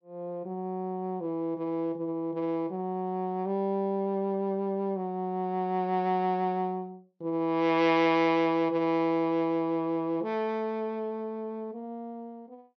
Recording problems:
treble missing; nothing above 6.1 kHz

